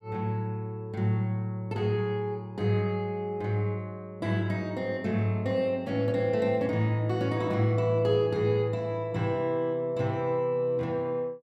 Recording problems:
none

